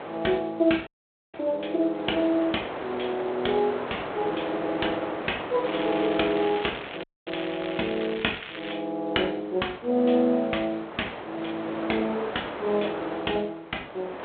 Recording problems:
telephone audio; 260 Hz to 3.6 kHz, G.726
wind noise; below 1.3 kHz, SNR 9 dB
audio cutting out; at 1 s and at 7 s
crackle; from 5.5 to 8.5 s; loose cable, SNR 11 dB

